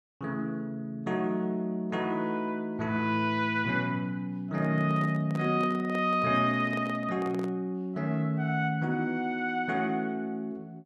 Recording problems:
handling noise; from 4.5 to 7.5 s; peak -8 dB vs average level

